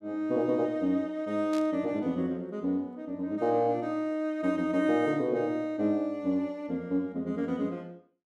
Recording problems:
static burst; at 1.5 s; peak -10 dB vs average level

